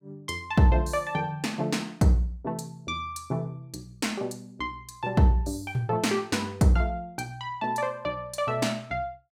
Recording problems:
none

